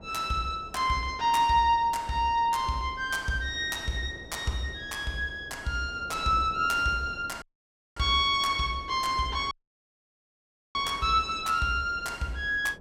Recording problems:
wind noise; below 540 Hz, SNR 21 dB
audio cutting out; at 7.5 s for 0.5 s and at 9.5 s for 1 s

